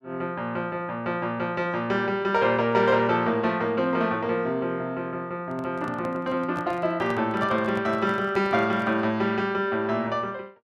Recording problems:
handling noise; from 5.5 to 9 s; peak -8 dB vs average level

